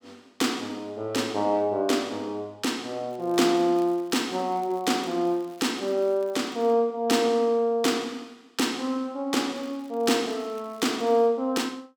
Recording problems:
crackling; from 3 to 6.5 s and from 9.5 to 11 s; loose cable, SNR 29 dB

